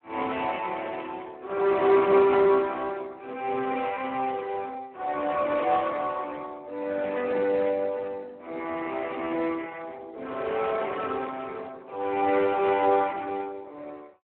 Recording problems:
phone line; 280 Hz to 2.9 kHz, Speex

